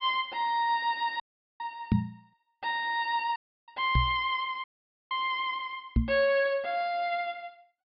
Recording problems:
treble cut off; nothing above 5.5 kHz
audio cutting out; at 1 s, at 3.5 s and at 4.5 s
microphone bump; at 2 s, at 4 s and at 6 s; peak +8 dB vs average level

